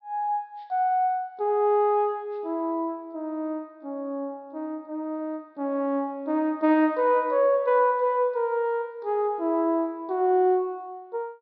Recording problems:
low-pass filter; nothing above 5.5 kHz

